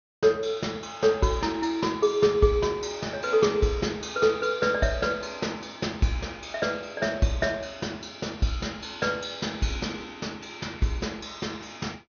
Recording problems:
low-pass filter; nothing above 6.6 kHz

